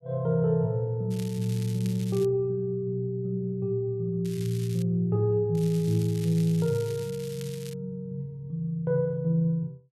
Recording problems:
crackle; from 1 to 2.5 s, at 4.5 s and from 5.5 to 7.5 s; loose cable, SNR 18 dB

